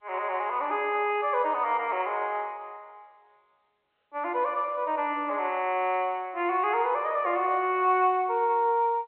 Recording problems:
phone line; 300 Hz to 3.2 kHz, G.711

